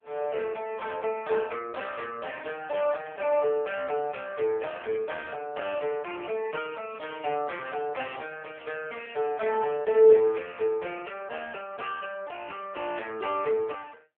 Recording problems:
phone line; 260 Hz to 3.3 kHz, AMR-NB
static burst; 5 times, first at 3 s; peak -16 dB vs average level

